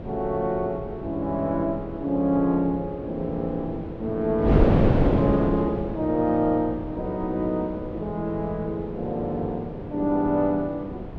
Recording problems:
wind on the microphone; below 440 Hz, SNR 4 dB

